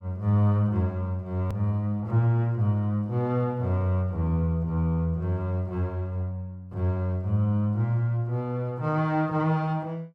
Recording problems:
click at an edit; at 1.5 s

